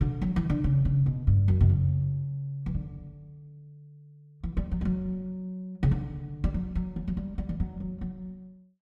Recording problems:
none

